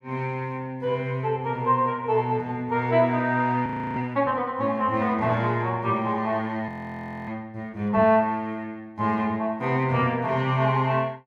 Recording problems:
frozen audio; at 3.5 s and at 6.5 s for 0.5 s

